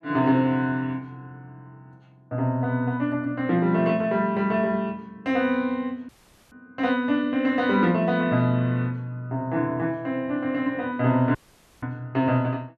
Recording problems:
dropout; at 6 s and at 11 s

